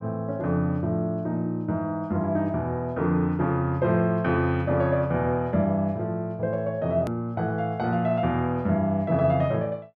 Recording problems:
click at an edit; at 7 s

